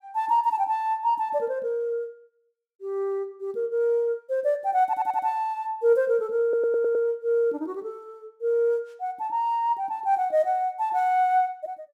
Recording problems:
audio stuttering; at 5 s and at 6.5 s

